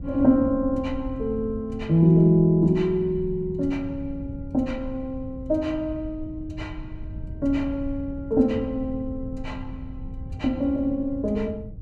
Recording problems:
wind noise; below 110 Hz, SNR 14 dB

